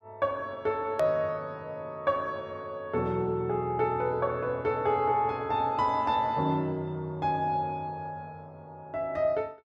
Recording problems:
edit click; at 1 s

